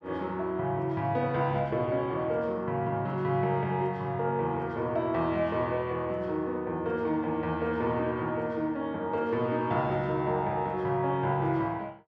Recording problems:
none

